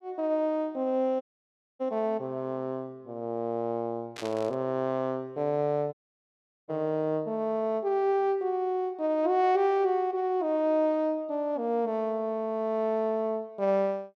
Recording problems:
audio cutting out; at 1 s for 0.5 s and at 6 s for 1 s
static burst; at 4 s; peak -7 dB vs average level

